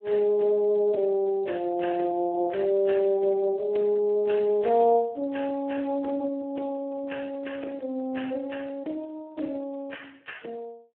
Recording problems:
telephone audio; 240 Hz to 3.3 kHz, Speex

